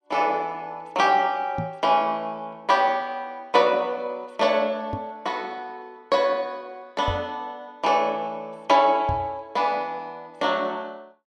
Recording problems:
microphone bump; 4 times, first at 1.5 s; peak -2 dB vs average level

